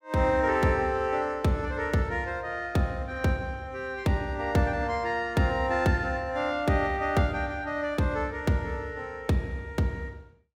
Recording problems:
none

